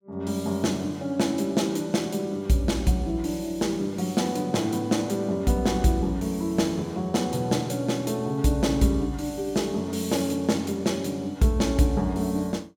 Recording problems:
none

